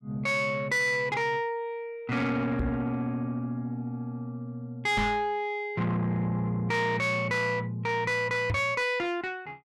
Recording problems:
distortion; soft clipping, signal-to-distortion ratio 10 dB
microphone thump; at 2.5 s, at 5 s and at 8.5 s; peak +3 dB vs average level

